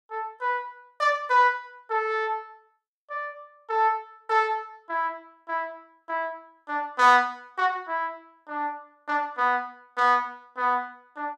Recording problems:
none

